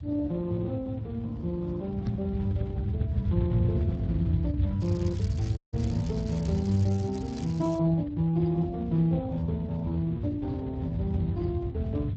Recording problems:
lossy compression; Speex, log-spectral distance 2 dB
rumble; below 130 Hz, SNR 4 dB
knock on the microphone; at 2 s; peak +5 dB vs average level
crackling; from 5 to 8 s; loose cable, SNR 19 dB
dropout; at 5.5 s

